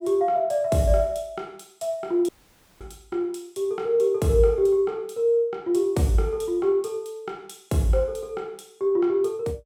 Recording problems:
audio cutting out; at 2.5 s for 0.5 s

